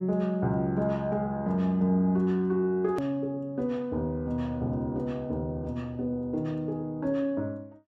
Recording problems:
edit click; at 3 s

